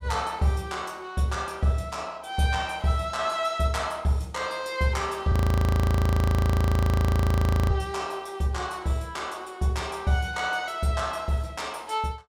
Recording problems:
audio freezing; at 5.5 s for 2.5 s

